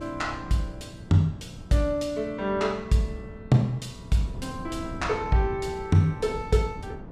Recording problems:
hum; 60 Hz, harmonics up to 480 Hz, SNR 22 dB
wind noise; below 240 Hz, SNR 15 dB

